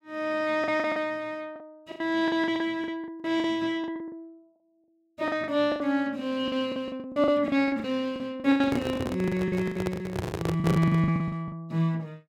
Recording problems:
lost packets; 17% of the sound replaced, filled with the last packet
handling noise; from 8.5 to 11 s; peak +2 dB vs average level

